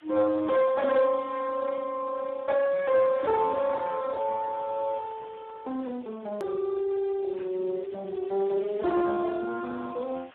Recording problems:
phone line; 280 Hz to 2.1 kHz, Speex
distortion; soft clipping, signal-to-distortion ratio 11 dB
hiss; SNR 27 dB
click at an edit; at 6.5 s

